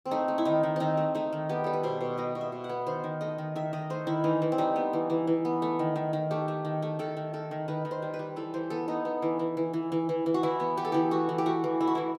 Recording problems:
none

